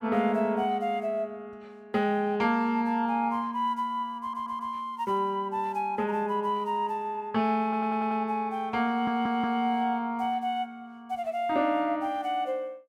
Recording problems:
audio stuttering; at 4 s, at 7.5 s and at 9 s

